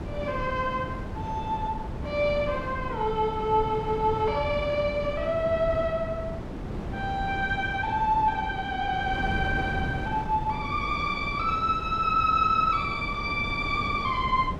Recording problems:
wind noise; below 370 Hz, SNR 8 dB

